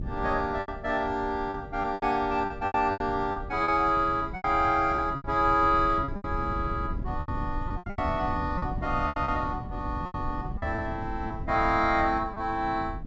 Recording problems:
treble cut off; nothing above 8 kHz
wind on the microphone; below 140 Hz, SNR 10 dB
packet loss; 11% of the sound replaced, filled with repeated pitch periods

